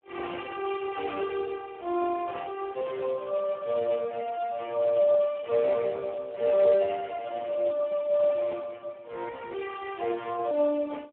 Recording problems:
telephone audio; 300 Hz to 2.2 kHz, Speex

